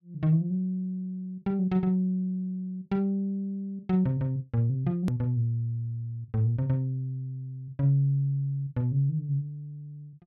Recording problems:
hard cut with a click; at 5 s

